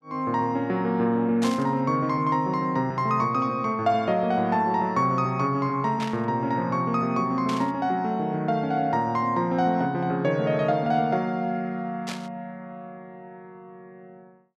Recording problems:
static burst; 4 times, first at 1.5 s; peak -5 dB vs average level

